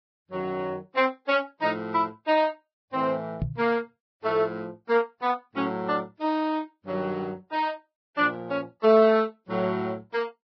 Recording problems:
lossy codec; Vorbis, log-spectral distance 2 dB, nothing above 5 kHz
microphone thump; at 3.5 s; peak +1 dB vs average level

